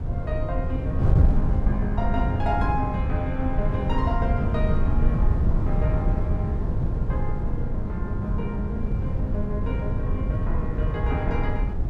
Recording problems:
wind noise; below 110 Hz, SNR -5 dB

